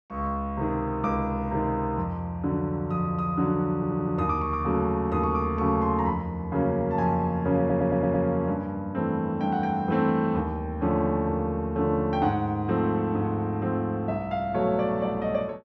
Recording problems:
audio stuttering; at 4 s and at 7.5 s

